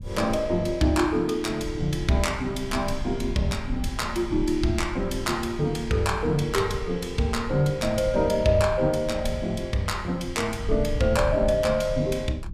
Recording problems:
rumble; below 100 Hz, SNR 10 dB

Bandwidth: 15 kHz